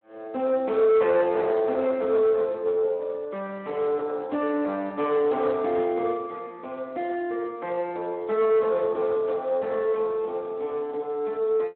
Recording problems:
phone line; 280 Hz to 3 kHz, Speex
distortion; soft clipping, signal-to-distortion ratio 12 dB

